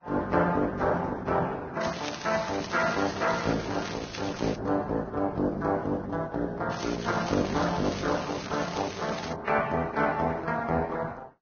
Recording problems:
lossy compression; Opus, then Vorbis, log-spectral distance 7 dB, nothing above 6.3 kHz
crackling; from 2 to 4.5 s, from 6.5 to 8.5 s and at 8.5 s; loose cable, SNR 11 dB

